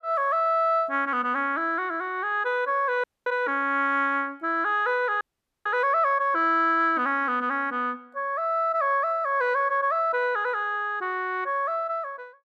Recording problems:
frozen audio; at 3 s and at 5 s

